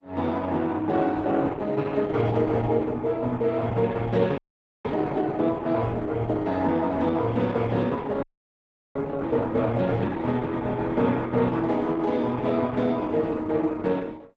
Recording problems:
lossy codec; Opus, log-spectral distance 3 dB, nothing above 7.6 kHz
frozen audio; at 4.5 s and at 8 s for 0.5 s

